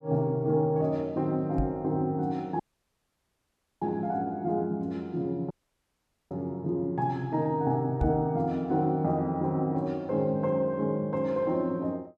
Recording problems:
microphone thump; at 1.5 s and at 8 s; peak +3 dB vs average level
audio cutting out; at 2.5 s for 1 s and at 5.5 s for 1 s

